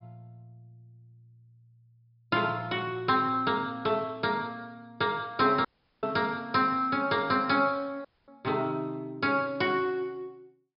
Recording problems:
low-pass filter; nothing above 5.5 kHz
audio cutting out; at 5.5 s and at 8 s

